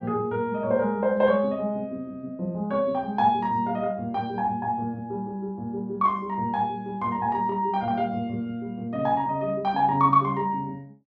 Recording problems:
none

